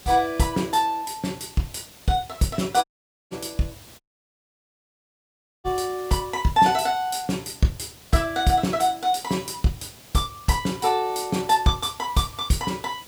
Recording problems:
background hiss; SNR 21 dB
dropout; at 3 s and at 4 s for 1.5 s

